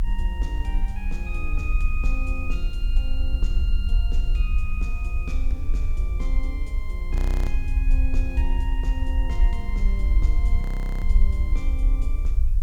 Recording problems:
background hiss; SNR 23 dB
rumble; below 52 Hz, SNR -11 dB
wind on the microphone; below 1.4 kHz, SNR 24 dB
audio freezing; at 7 s and at 11 s

